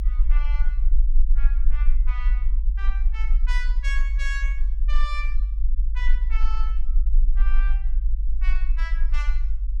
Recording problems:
low-frequency rumble; below 46 Hz, strongest tone 20 Hz, SNR -12 dB

